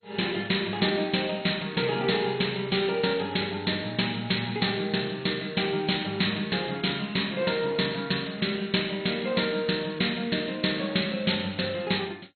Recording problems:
lossy codec; MP2, log-spectral distance 10 dB, nothing above 4.2 kHz

